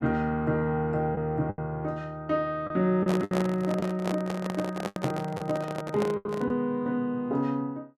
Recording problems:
lost packets; 6% of the sound replaced, filled with the last packet
handling noise; from 3 to 6.5 s; peak +2 dB vs average level

